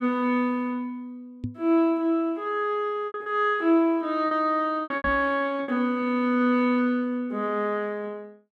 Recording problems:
lost packets; 5% of the sound replaced, filled with repeated pitch periods
microphone thump; at 1.5 s and at 5 s; peak -3 dB vs average level

